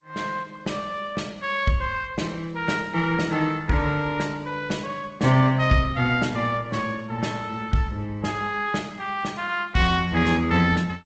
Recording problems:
codec artefacts; Opus, then G.722, log-spectral distance 4 dB, nothing above 7.6 kHz

